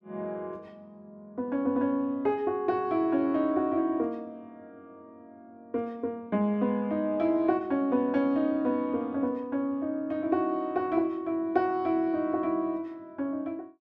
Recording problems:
none

